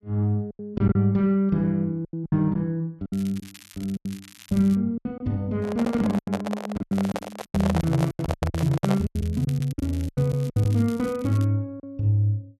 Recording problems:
packet loss; 13% of the sound replaced, filled with silence
crackle; from 3 to 5 s and from 7 to 11 s; loose cable, SNR 22 dB
microphone handling noise; from 5.5 to 9 s; peak 0 dB vs average level

